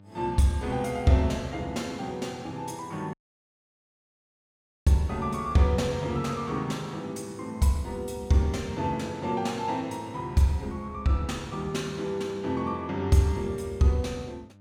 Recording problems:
hum; 50 Hz, harmonics up to 900 Hz, SNR 25 dB
dropout; at 3 s for 1.5 s

